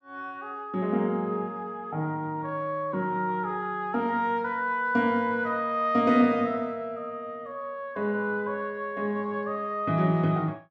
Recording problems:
none

